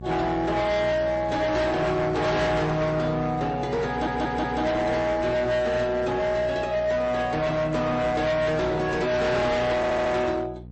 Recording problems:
codec artefacts; MP3, then AAC, log-spectral distance 2 dB, nothing above 8 kHz
distortion; hard clipping, signal-to-distortion ratio 7 dB
hum; 60 Hz, harmonics up to 540 Hz, SNR 16 dB
stutter; at 4 s and at 10 s

